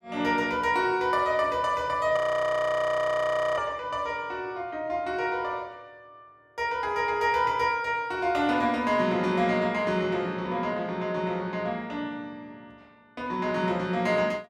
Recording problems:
frozen audio; at 2 s for 1.5 s

